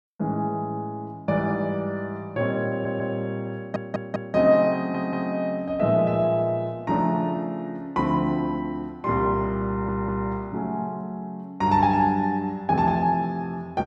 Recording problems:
stutter; 4 times, first at 2.5 s

